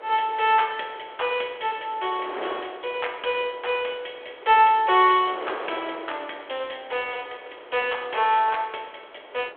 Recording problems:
phone line; 320 Hz to 3.4 kHz, G.726
wind noise; below 1.2 kHz, SNR 16 dB

